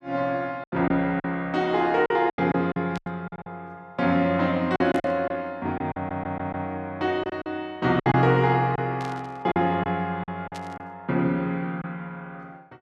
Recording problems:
packet loss; 9% of the sound replaced, filled with silence
static burst; 4 times, first at 3 s; peak -11 dB vs average level
stutter; at 6 s

